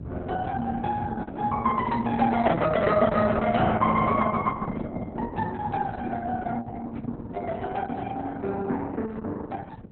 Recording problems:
lossy codec; Opus, log-spectral distance 3 dB, nothing above 4 kHz
wind on the microphone; below 240 Hz, SNR 11 dB

